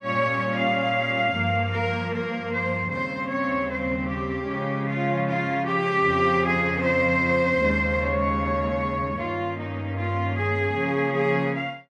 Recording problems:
none

